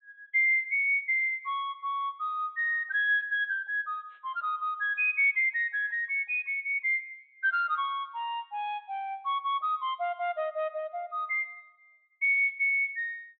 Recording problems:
treble missing; nothing above 4 kHz

